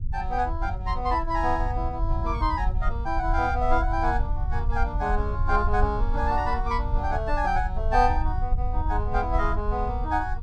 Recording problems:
rumble; below 66 Hz, SNR 2 dB

